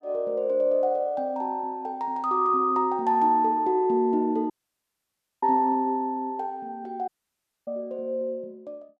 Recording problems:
dropout; at 4.5 s for 1 s and at 7 s for 0.5 s

